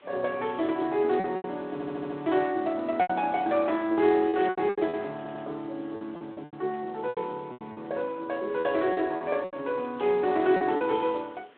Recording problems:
telephone audio; 190 Hz to 3.7 kHz, Speex
hiss; SNR 29 dB
lost packets; 10% of the sound replaced, filled with repeated pitch periods
stutter; at 1.5 s and at 5 s
burst of static; at 4.5 s and at 10 s; peak -13 dB vs average level

